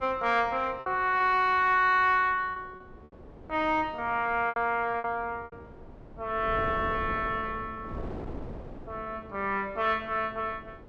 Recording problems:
wind on the microphone; below 440 Hz, SNR 17 dB
packet loss; 6% of the sound replaced, filled with repeated pitch periods

